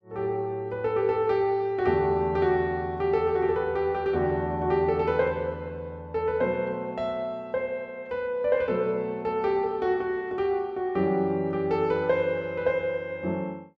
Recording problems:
none

